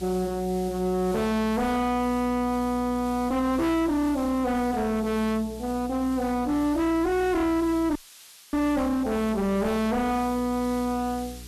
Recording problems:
distorted audio; hard clipping, uneven, signal-to-distortion ratio 5 dB
hum; 60 Hz, harmonics up to 420 Hz, SNR 18 dB
background hiss; slope +4 dB per octave, SNR 20 dB
audio cutting out; at 8 s for 0.5 s

